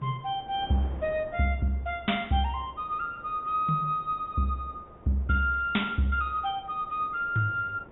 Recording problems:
low-pass filter; nothing above 3.7 kHz
wind on the microphone; below 670 Hz, SNR 20 dB

